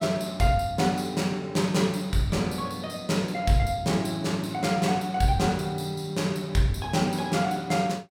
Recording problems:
none

